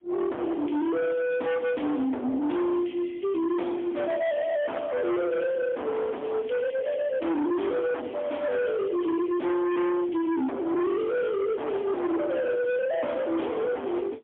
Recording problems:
phone line; 690 Hz to 2 kHz, AMR-NB, then MP3
distorted audio; hard clipping, signal-to-distortion ratio 6 dB

